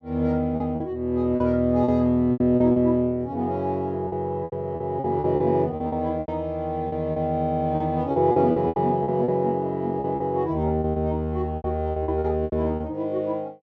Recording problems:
packet loss; 12% of the sound replaced, filled with repeated pitch periods

